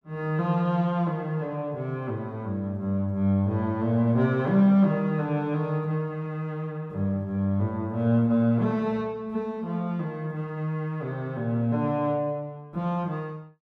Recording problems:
none

